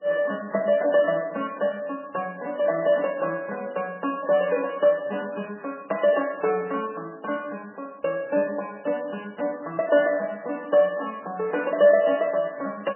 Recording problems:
lossy compression; MP3, log-spectral distance 3 dB, nothing above 2.5 kHz

